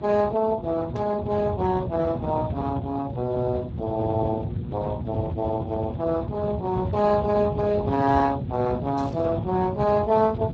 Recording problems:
lossy codec; Speex, log-spectral distance 3 dB
hum; 60 Hz, harmonics up to 960 Hz, SNR 13 dB
rumble; below 180 Hz, SNR 7 dB
burst of static; at 1 s and at 9 s; peak -16 dB vs average level

